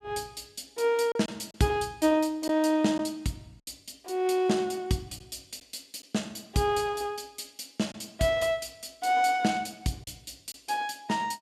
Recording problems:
packet loss; 1.8% of the sound replaced, filled with silence

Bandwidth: 15.5 kHz